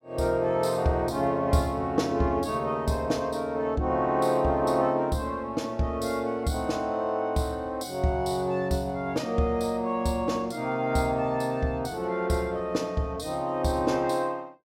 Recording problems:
none

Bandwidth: 16 kHz